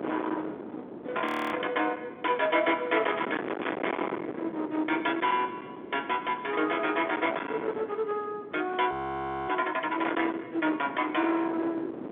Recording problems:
phone line; 240 Hz to 3.6 kHz, G.711
distortion; hard clipping, uneven, signal-to-distortion ratio 9 dB
wind on the microphone; below 1.2 kHz, SNR 9 dB
audio freezing; at 1.5 s and at 9 s for 0.5 s

